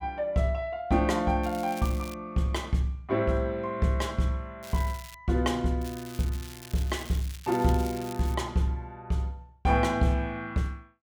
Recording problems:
crackling; at 1.5 s, at 4.5 s and from 6 to 8.5 s; loose cable, SNR 17 dB

